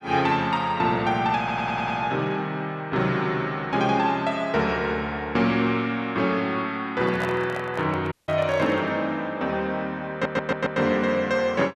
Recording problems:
audio stuttering; at 1.5 s and at 10 s
handling noise; from 7 to 9 s; peak -4 dB vs average level
audio cutting out; at 8 s

